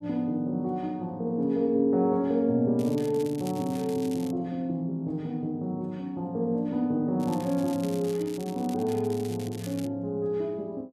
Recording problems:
crackle; from 3 to 4.5 s and from 7 to 10 s; loose cable, SNR 18 dB

